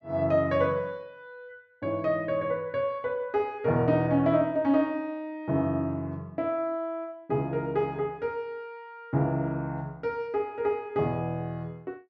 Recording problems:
none

